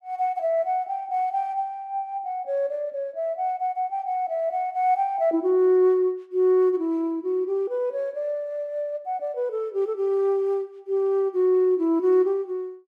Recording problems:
none

